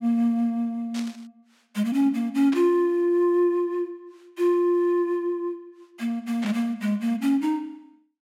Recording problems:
burst of static; at 1 s, at 2.5 s and at 6.5 s; peak -9 dB vs average level

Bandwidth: 16 kHz